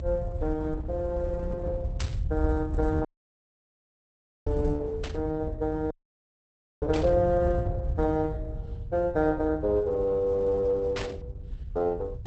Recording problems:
lossy codec; Opus, log-spectral distance 2 dB
low-frequency rumble; below 86 Hz, SNR 5 dB
static burst; 4 times, first at 2 s; peak -4 dB vs average level
dropout; at 3 s for 1.5 s and at 6 s for 1 s

